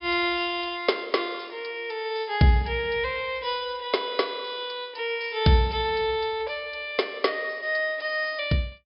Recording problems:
low-pass filter; nothing above 5.5 kHz

